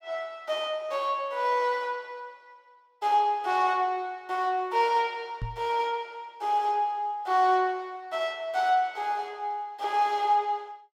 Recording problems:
microphone thump; at 5.5 s; peak -3 dB vs average level

